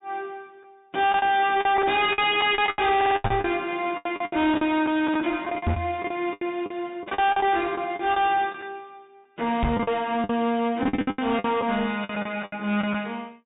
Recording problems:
treble cut off; nothing above 4 kHz
distortion; hard clipping, uneven, signal-to-distortion ratio 10 dB
lost packets; 15% of the sound replaced, filled with the last packet
stutter; at 3 s
knock on the microphone; at 3.5 s, at 5.5 s and at 9.5 s; peak +3 dB vs average level

